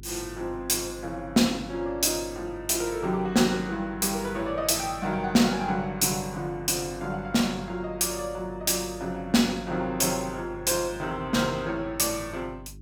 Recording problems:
hum; 50 Hz, harmonics up to 400 Hz, SNR 19 dB

